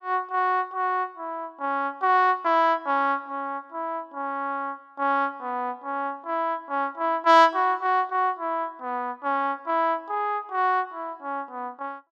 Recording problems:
none

